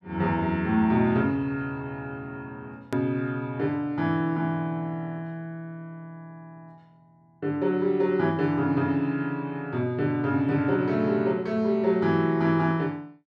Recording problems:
click at an edit; at 3 s

